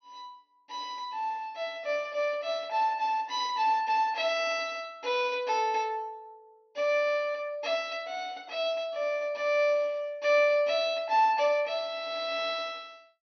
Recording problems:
low-pass filter; nothing above 6.3 kHz

